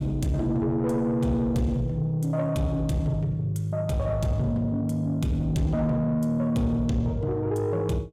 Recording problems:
distorted audio; soft clipping, signal-to-distortion ratio 12 dB

